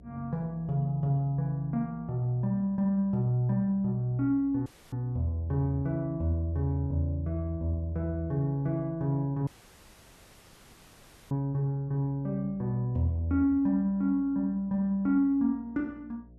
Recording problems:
hum; 60 Hz, harmonics up to 660 Hz, SNR 25 dB
dropout; at 4.5 s and at 9.5 s for 2 s

